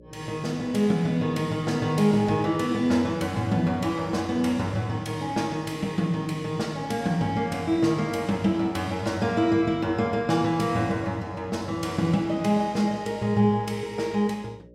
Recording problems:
hum; 60 Hz, harmonics up to 600 Hz, SNR 26 dB

